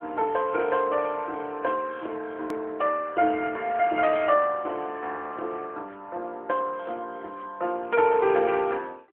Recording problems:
telephone audio; 260 Hz to 3.2 kHz, AMR-NB
click at an edit; at 2.5 s

